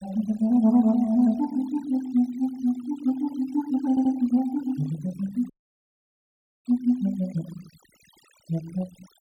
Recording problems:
noise reduction artefacts; signal-to-artefact ratio 24 dB
stutter; at 4 s
audio cutting out; at 5.5 s for 1 s

